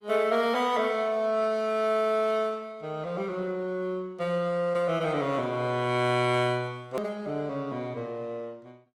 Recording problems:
codec artefacts; Opus, log-spectral distance 2 dB, nothing above 18.3 kHz
edit click; at 7 s

